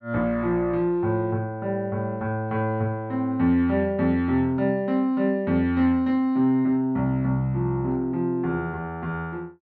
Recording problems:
none

